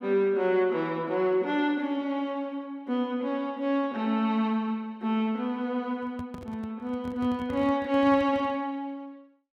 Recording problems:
handling noise; from 6 to 8.5 s; peak -10 dB vs average level

